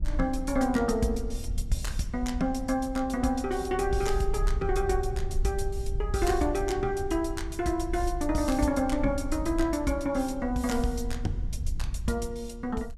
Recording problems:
wind on the microphone; below 62 Hz, SNR 7 dB

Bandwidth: 14.5 kHz